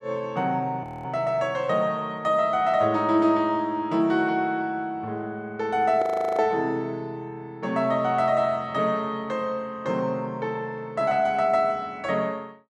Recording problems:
audio freezing; at 1 s and at 6 s

